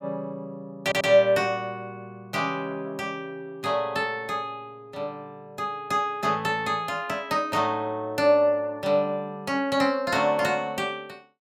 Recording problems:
stutter; at 1 s

